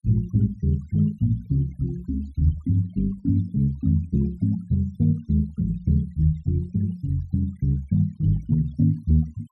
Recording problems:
denoising artefacts; signal-to-artefact ratio 28 dB

